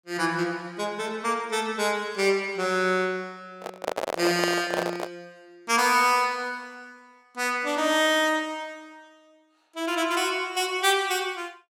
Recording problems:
handling noise; from 3.5 to 5 s; peak +2 dB vs average level

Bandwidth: 17.5 kHz